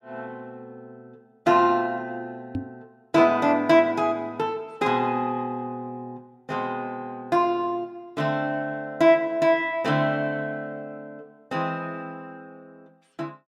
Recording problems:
microphone bump; at 2.5 s; peak -2 dB vs average level

